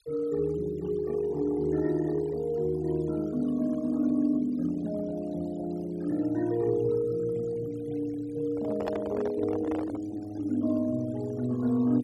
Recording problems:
denoising artefacts; signal-to-artefact ratio 21 dB
microphone handling noise; from 8.5 to 10 s; peak -1 dB vs average level

